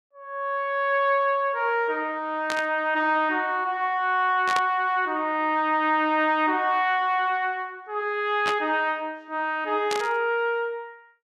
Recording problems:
static burst; 4 times, first at 2.5 s; peak -1 dB vs average level

